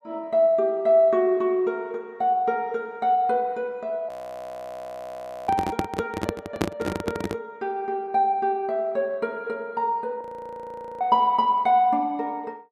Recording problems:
frozen audio; at 4 s for 1.5 s and at 10 s for 1 s
handling noise; from 5.5 to 7.5 s; peak +4 dB vs average level

